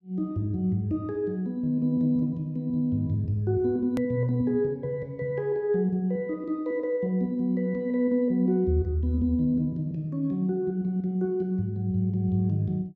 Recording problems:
hard cut with a click; at 4 s

